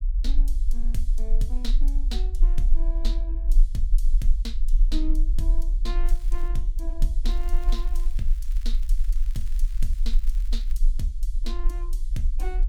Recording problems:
rumble; below 36 Hz, strongest tone 24 Hz, SNR -11 dB
crackling; at 6 s, from 7.5 to 10 s and at 10 s; loose cable, SNR 17 dB

